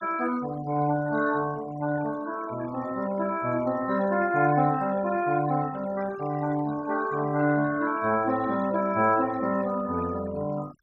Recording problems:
denoising artefacts; signal-to-artefact ratio 17 dB

